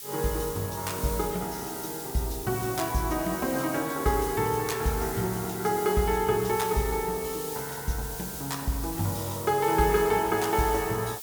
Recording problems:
background hiss; SNR 8 dB

